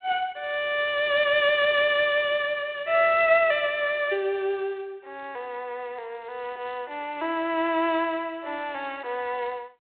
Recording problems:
telephone audio; 340 Hz to 3.9 kHz, G.726

